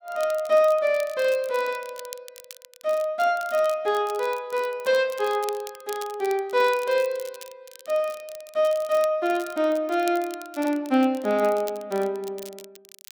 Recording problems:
crackling; vinyl, SNR 19 dB

